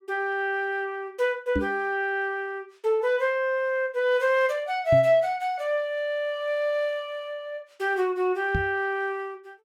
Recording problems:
microphone thump; at 1.5 s, at 5 s and at 8.5 s; peak +2 dB vs average level

